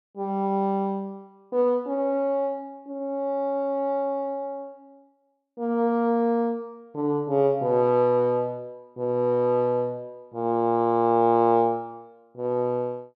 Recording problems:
none

